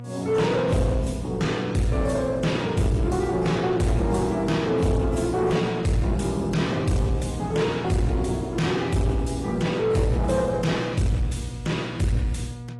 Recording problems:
codec artefacts; AAC, log-spectral distance 3 dB, nothing above 11 kHz
distorted audio; soft clipping, signal-to-distortion ratio 10 dB
hum; 60 Hz, harmonics up to 960 Hz, SNR 12 dB

